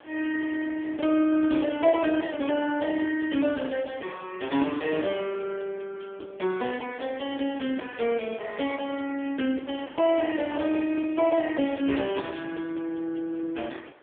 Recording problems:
phone line; 240 Hz to 3.3 kHz, AMR-NB
wind noise; below 1.6 kHz, SNR 21 dB

